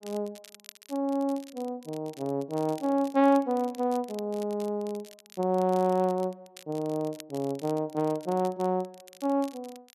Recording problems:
crackle; vinyl, SNR 22 dB

